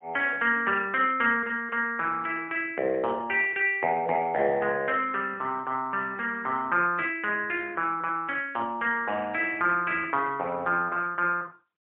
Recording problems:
telephone audio; 190 Hz to 3.3 kHz, AMR-NB, then MP3

